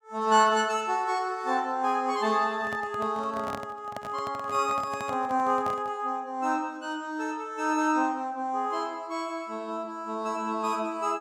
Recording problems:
microphone handling noise; from 2.5 to 6 s; peak -4 dB vs average level

